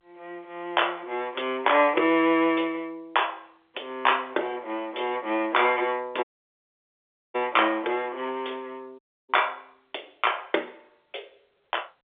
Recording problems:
telephone audio; 300 Hz to 3.6 kHz, G.711
dropout; at 6 s for 1 s and at 9 s

